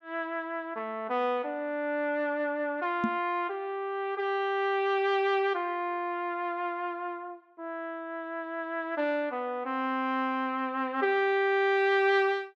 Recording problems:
microphone bump; at 3 s; peak +4 dB vs average level

